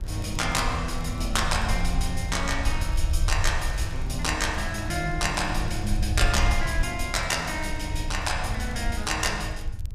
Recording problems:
rumble; below 70 Hz, SNR 4 dB
wind on the microphone; below 210 Hz, SNR 15 dB
crackle; vinyl, SNR 27 dB

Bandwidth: 14.5 kHz